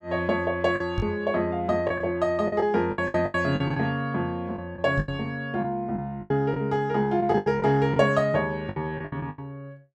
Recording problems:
lost packets; 11% of the sound replaced, filled with the last packet
knock on the microphone; at 1 s and at 5 s; peak +1 dB vs average level

